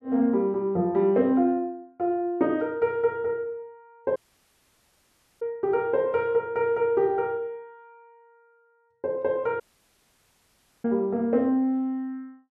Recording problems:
dropout; at 4 s for 1.5 s and at 9.5 s for 1 s

